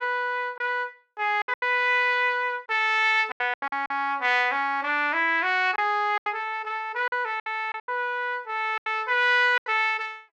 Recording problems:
lost packets; 9% of the sound replaced, filled with silence

